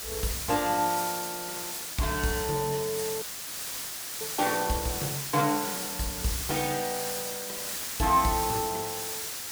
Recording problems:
background hiss; slope +1 dB per octave, SNR 3 dB
frozen audio; at 3 s for 1 s

